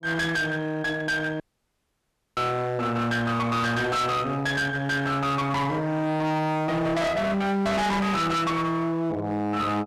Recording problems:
distorted audio; hard clipping, uneven, signal-to-distortion ratio 5 dB
dropout; at 1.5 s for 1 s

